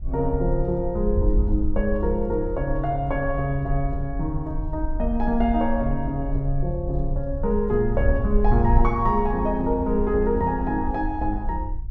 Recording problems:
wind noise; below 60 Hz, SNR 4 dB

